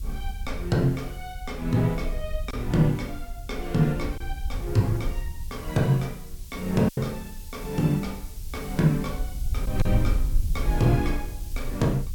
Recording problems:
background hiss; SNR 20 dB
wind noise; below 62 Hz, SNR 8 dB
lost packets; 1.6% of the sound replaced, filled with silence

